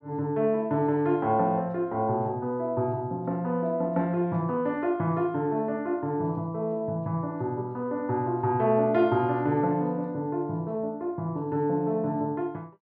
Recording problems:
none

